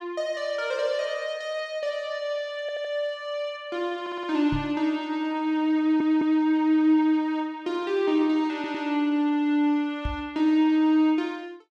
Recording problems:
stutter; 4 times, first at 2.5 s
microphone thump; at 4.5 s and at 10 s; peak -2 dB vs average level

